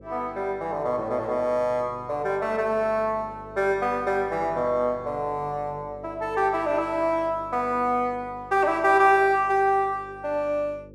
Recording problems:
electrical hum; 50 Hz, harmonics up to 550 Hz, SNR 22 dB

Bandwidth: 13.5 kHz